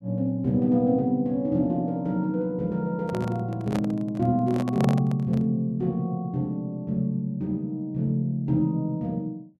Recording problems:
microphone handling noise; from 3 to 5.5 s; peak -1 dB vs average level

